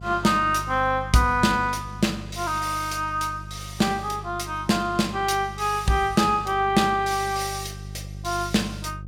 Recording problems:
mains hum; 50 Hz, harmonics up to 400 Hz, SNR 14 dB

